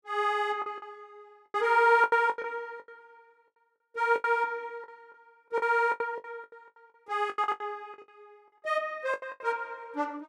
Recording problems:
packet loss; 16% of the sound replaced, filled with the last packet

